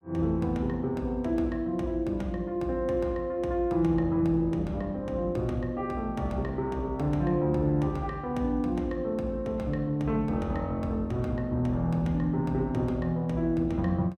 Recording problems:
none

